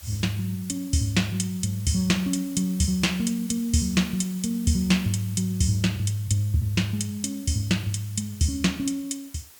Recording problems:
hiss; slope 0 dB per octave, SNR 19 dB

